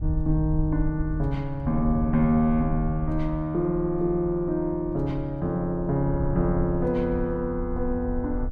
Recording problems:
wind on the microphone; below 66 Hz, SNR 9 dB

